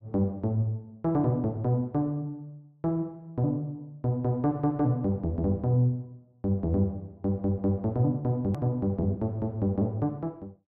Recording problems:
hard cut with a click; at 8.5 s

